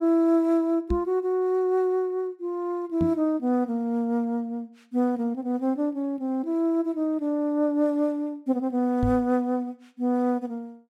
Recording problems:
microphone thump; at 1 s, at 3 s and at 9 s; peak +1 dB vs average level

